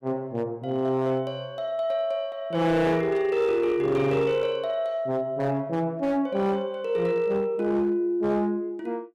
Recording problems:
distortion; hard clipping, uneven, signal-to-distortion ratio 11 dB

